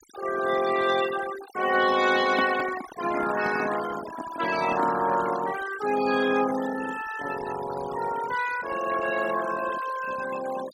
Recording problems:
denoising artefacts; signal-to-artefact ratio 11 dB
microphone handling noise; from 2 to 5 s; peak 0 dB vs average level

